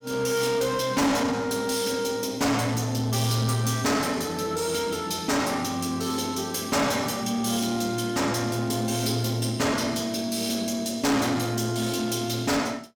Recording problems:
distorted audio; soft clipping, signal-to-distortion ratio 8 dB

